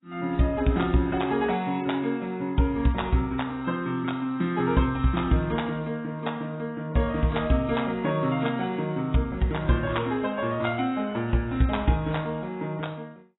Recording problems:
codec artefacts; AAC, log-spectral distance 3 dB, nothing above 3.8 kHz

